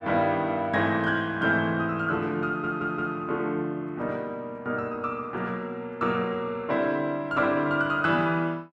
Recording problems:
audio stuttering; at 2.5 s

